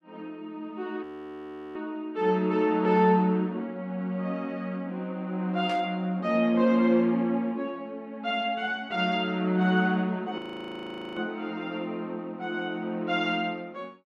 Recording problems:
audio freezing; at 1 s for 0.5 s and at 10 s for 1 s
burst of static; at 5.5 s; peak -10 dB vs average level

